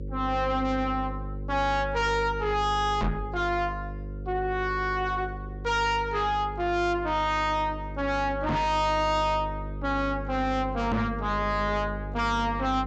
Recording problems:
treble cut off; nothing above 8 kHz
distortion; soft clipping, signal-to-distortion ratio 6 dB
hum; 50 Hz, harmonics up to 550 Hz, SNR 9 dB
microphone bump; at 3 s, at 8.5 s and at 11 s; peak +3 dB vs average level

